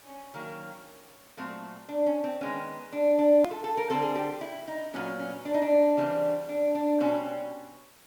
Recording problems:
background hiss; slope -2 dB per octave, SNR 25 dB
hard cut with a click; at 3.5 s

